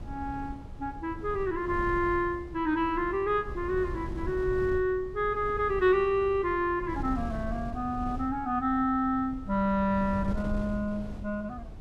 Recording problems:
wind on the microphone; below 130 Hz, SNR 11 dB

